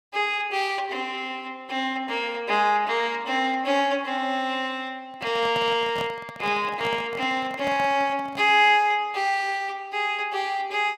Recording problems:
microphone handling noise; from 5 to 8.5 s; peak -6 dB vs average level

